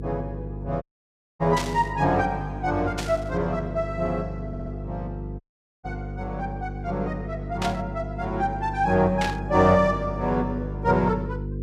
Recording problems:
electrical hum; 50 Hz, harmonics up to 500 Hz, SNR 8 dB
dropout; at 1 s for 0.5 s and at 5.5 s
static burst; 4 times, first at 1.5 s; peak -1 dB vs average level
audio stuttering; at 4.5 s

